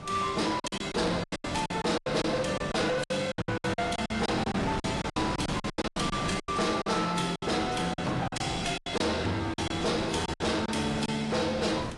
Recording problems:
lossy compression; AAC, log-spectral distance 5 dB, nothing above 10.4 kHz
distorted audio; hard clipping, uneven, signal-to-distortion ratio 8 dB
wind noise; below 1.3 kHz, SNR 9 dB
lost packets; 15% of the sound replaced, filled with silence

